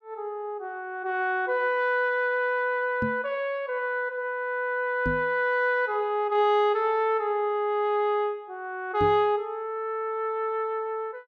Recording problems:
microphone thump; at 3 s, at 5 s and at 9 s; peak 0 dB vs average level

